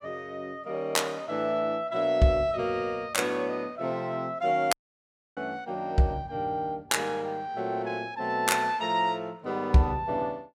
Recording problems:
dropout; at 4.5 s for 0.5 s

